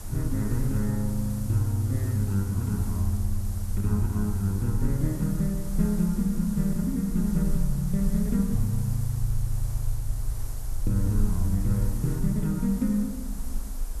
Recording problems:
hiss; SNR 16 dB
low-frequency rumble; below 46 Hz, strongest tone 20 Hz, SNR 8 dB

